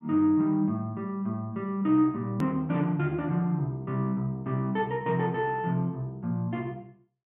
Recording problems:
treble cut off; nothing above 4 kHz
hard cut with a click; at 2.5 s

